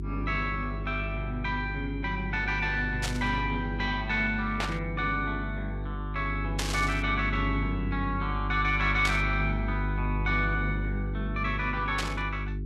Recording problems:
electrical hum; 50 Hz, harmonics up to 400 Hz, SNR 3 dB
burst of static; 5 times, first at 3 s; peak +3 dB vs average level

